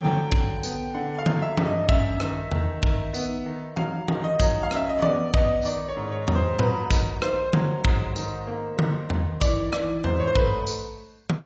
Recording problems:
lossy codec; AAC, log-spectral distance 2 dB

